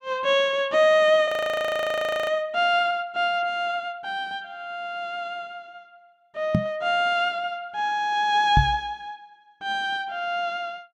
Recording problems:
audio freezing; at 1.5 s for 1 s
knock on the microphone; at 6.5 s and at 8.5 s; peak +6 dB vs average level

